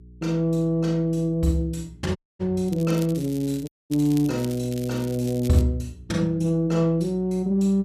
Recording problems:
hum; 60 Hz, harmonics up to 420 Hz, SNR 24 dB
dropout; at 2 s and at 3.5 s
crackling; from 2.5 to 5.5 s; loose cable, SNR 19 dB

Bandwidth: 14.5 kHz